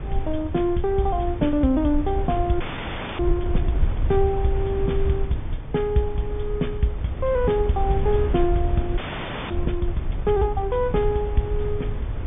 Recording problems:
treble cut off; nothing above 3.6 kHz
wind on the microphone; below 82 Hz, SNR 4 dB
audio freezing; at 2.5 s for 0.5 s and at 9 s for 0.5 s

